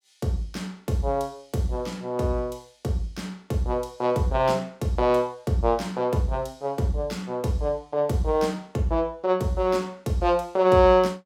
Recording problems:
none

